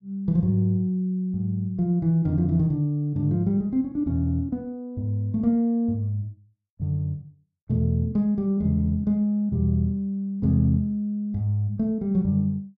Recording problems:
none

